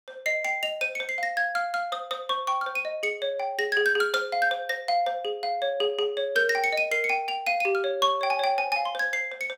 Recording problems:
none

